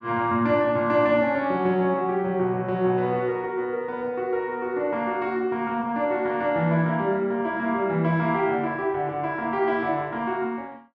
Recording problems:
none

